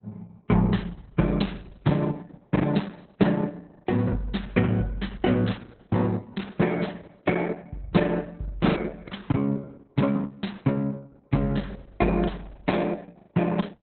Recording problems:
lossy codec; Opus, log-spectral distance 4 dB, nothing above 4 kHz
lost packets; 8% of the sound replaced, filled with the last packet

